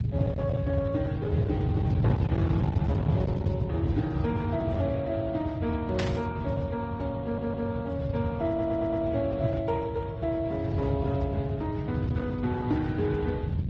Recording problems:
codec artefacts; Speex, then Opus, log-spectral distance 2 dB
distorted audio; hard clipping, signal-to-distortion ratio 11 dB
low-frequency rumble; below 160 Hz, SNR 0 dB
burst of static; at 6 s; peak -1 dB vs average level
audio stuttering; at 7 s and at 8.5 s

